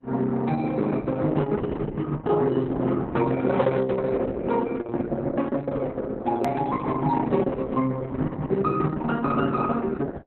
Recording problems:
lossy compression; Opus, then Opus, log-spectral distance 3 dB, nothing above 13.1 kHz
edit click; at 6.5 s

